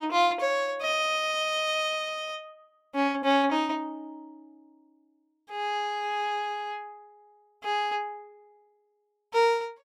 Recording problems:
none

